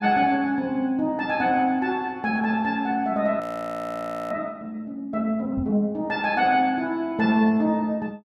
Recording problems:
frozen audio; at 3.5 s for 1 s
microphone thump; at 5.5 s; peak -6 dB vs average level

